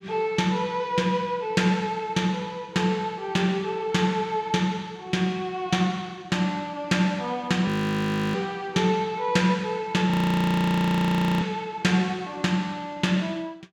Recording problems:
frozen audio; at 7.5 s for 0.5 s and at 10 s for 1.5 s

